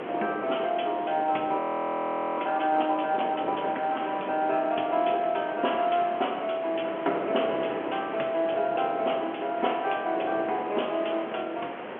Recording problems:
phone line; 280 Hz to 3.3 kHz, G.711
background hiss; SNR 13 dB
wind on the microphone; below 700 Hz, SNR 10 dB
frozen audio; at 1.5 s for 1 s

